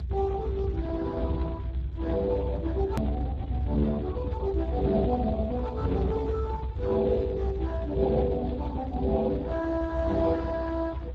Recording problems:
codec artefacts; Speex, log-spectral distance 2 dB, nothing above 13.7 kHz
low-frequency rumble; below 98 Hz, strongest tone 62 Hz, SNR 5 dB
click at an edit; at 3 s

